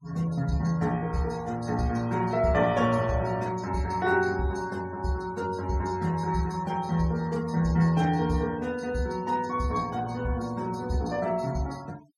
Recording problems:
noise reduction artefacts; signal-to-artefact ratio 21 dB

